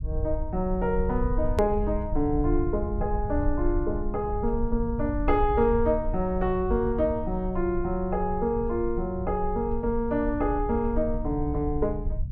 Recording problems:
low-frequency rumble; below 70 Hz, SNR 6 dB
edit click; at 1.5 s

